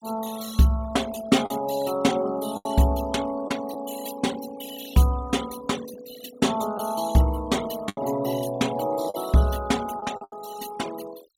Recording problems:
noise reduction artefacts; signal-to-artefact ratio 15 dB
packet loss; 4% of the sound replaced, filled with the last packet

